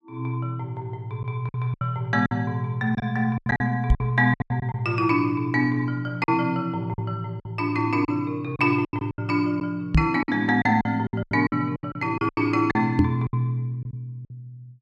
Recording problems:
packet loss; 11% of the sound replaced, filled with silence
knock on the microphone; at 4 s, at 10 s and at 13 s; peak +9 dB vs average level

